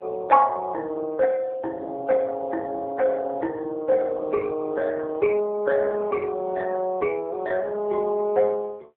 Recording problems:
phone line; 220 Hz to 2 kHz, AMR-NB

